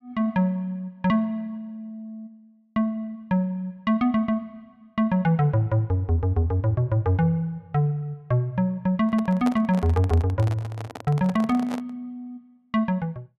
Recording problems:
handling noise; from 9 to 12 s; peak -3 dB vs average level

